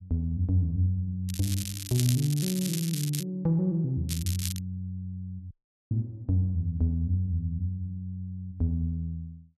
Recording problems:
crackling; from 1.5 to 3 s and at 4 s; loose cable, SNR 6 dB
dropout; at 5.5 s

